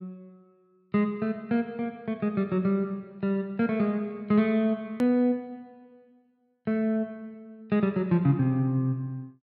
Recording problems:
edit click; at 5 s

